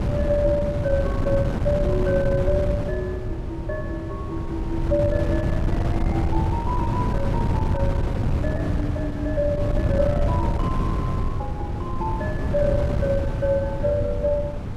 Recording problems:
wind on the microphone; below 180 Hz, SNR -1 dB

